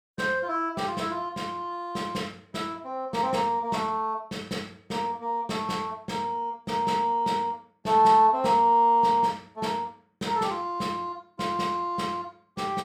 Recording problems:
none

